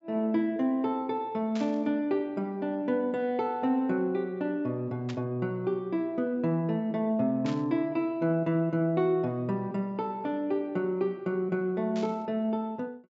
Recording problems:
treble missing; nothing above 8 kHz
burst of static; 4 times, first at 1.5 s; peak -9 dB vs average level

